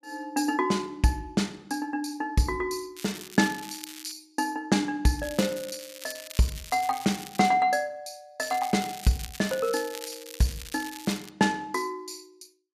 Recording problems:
crackling; from 3 to 4 s, from 5 to 7.5 s and from 8.5 to 11 s; loose cable, SNR 13 dB

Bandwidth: 14.5 kHz